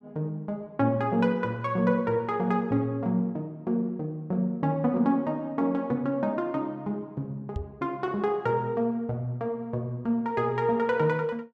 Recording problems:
microphone thump; at 7.5 s; peak -1 dB vs average level

